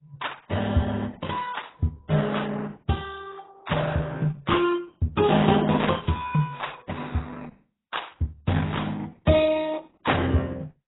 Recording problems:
lossy codec; Opus, then AAC, log-spectral distance 6 dB, nothing above 3.8 kHz

